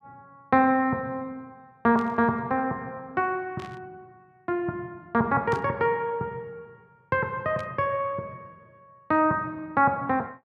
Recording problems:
static burst; 4 times, first at 2 s; peak -13 dB vs average level

